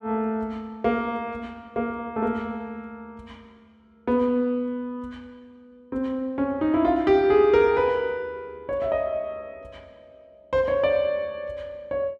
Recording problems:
none

